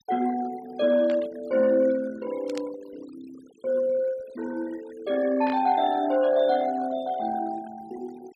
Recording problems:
noise reduction artefacts; signal-to-artefact ratio 20 dB
burst of static; at 1 s, at 2.5 s and at 5.5 s; peak -9 dB vs average level

